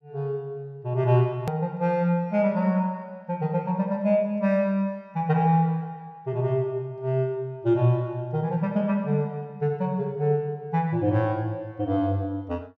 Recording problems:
click at an edit; at 1.5 s

